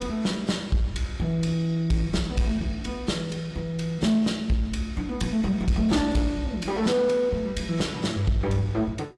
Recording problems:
codec artefacts; AAC, log-spectral distance 2 dB, nothing above 11 kHz
distortion; soft clipping, signal-to-distortion ratio 11 dB

